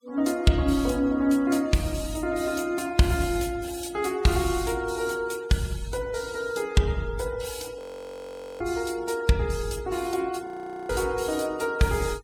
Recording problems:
noise reduction artefacts; signal-to-artefact ratio 21 dB
audio freezing; at 8 s for 1 s and at 10 s

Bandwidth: 17 kHz